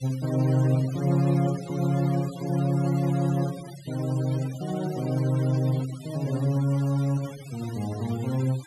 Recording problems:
denoising artefacts; signal-to-artefact ratio 18 dB

